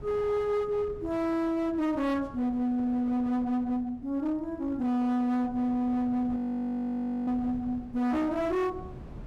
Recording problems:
distorted audio; hard clipping, uneven, signal-to-distortion ratio 10 dB
wind noise; below 270 Hz, SNR 19 dB
audio freezing; at 6.5 s for 1 s

